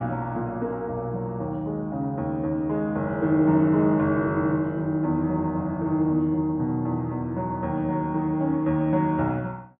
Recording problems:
treble cut off; nothing above 4 kHz

